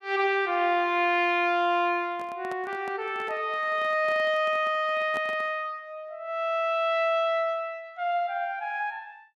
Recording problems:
handling noise; from 2 to 5.5 s; peak -9 dB vs average level

